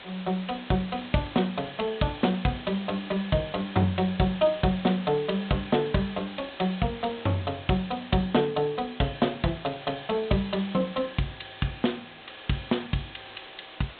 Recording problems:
treble cut off; nothing above 4 kHz
background hiss; SNR 16 dB

